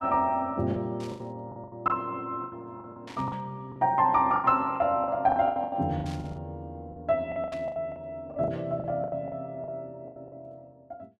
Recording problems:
lost packets; 16% of the sound replaced, filled with the last packet
static burst; 4 times, first at 1 s; peak -13 dB vs average level

